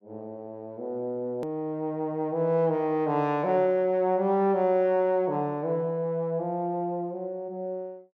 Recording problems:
edit click; at 1.5 s

